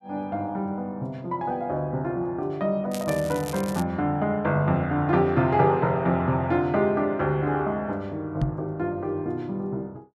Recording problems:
crackling; at 3 s; loose cable, SNR 15 dB
knock on the microphone; at 8.5 s; peak +4 dB vs average level

